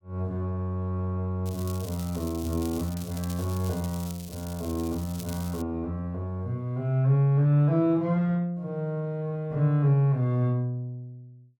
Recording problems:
crackle; from 1.5 to 3 s and from 3 to 5.5 s; loose cable, SNR 16 dB

